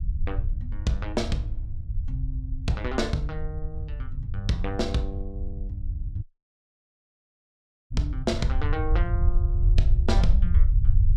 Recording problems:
low-frequency rumble; below 72 Hz, SNR -3 dB
dropout; at 6 s for 1.5 s

